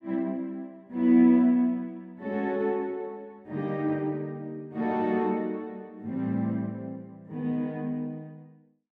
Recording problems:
none

